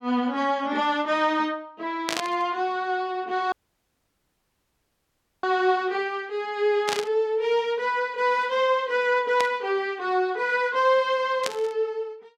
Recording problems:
static burst; 4 times, first at 2 s; peak +2 dB vs average level
audio cutting out; at 3.5 s for 2 s

